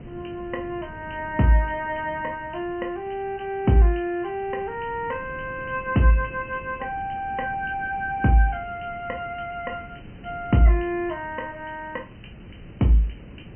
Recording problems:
low-pass filter; nothing above 3.1 kHz
background hiss; SNR 28 dB
wind on the microphone; below 280 Hz, SNR 18 dB

